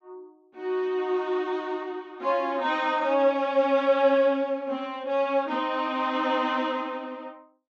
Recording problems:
none

